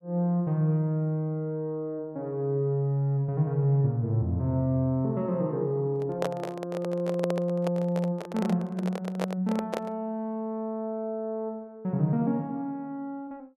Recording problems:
handling noise; from 6 to 10 s; peak +2 dB vs average level

